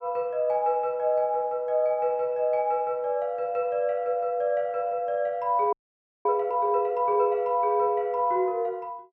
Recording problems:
frozen audio; at 5.5 s for 0.5 s

